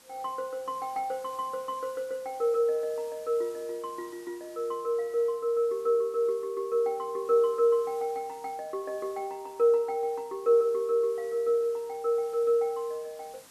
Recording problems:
background hiss; slope -1 dB per octave, SNR 24 dB

